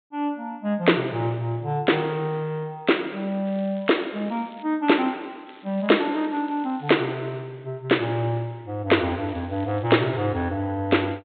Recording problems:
treble cut off; nothing above 4 kHz
crackle; from 3.5 to 4.5 s, from 5.5 to 7 s and from 9.5 to 10 s; loose cable, SNR 27 dB

